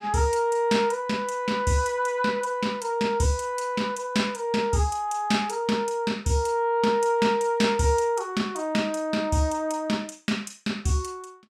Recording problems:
none

